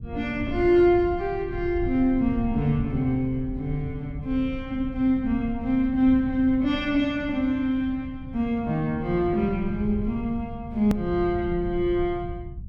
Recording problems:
low-frequency rumble; below 120 Hz, SNR 12 dB
hard cut with a click; at 11 s

